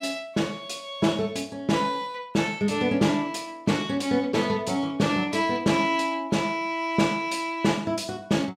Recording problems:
none

